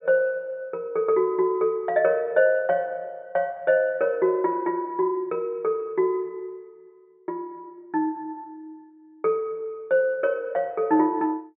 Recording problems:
low-pass filter; nothing above 4 kHz

